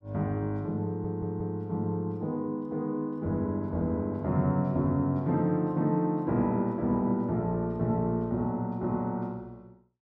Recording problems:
stutter; at 1 s

